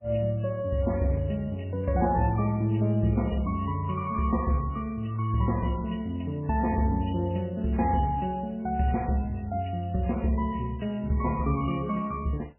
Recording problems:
codec artefacts; MP3, log-spectral distance 4 dB, nothing above 2.9 kHz

